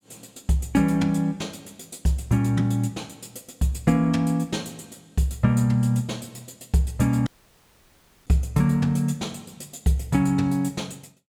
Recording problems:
dropout; at 7.5 s for 1 s

